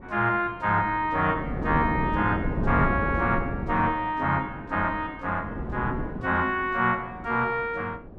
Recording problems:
wind noise; below 330 Hz, SNR 6 dB

